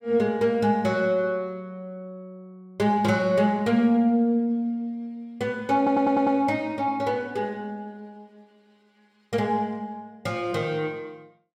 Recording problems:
stutter; at 6 s

